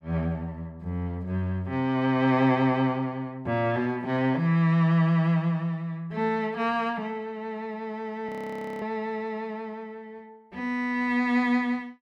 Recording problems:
audio freezing; at 8.5 s for 0.5 s

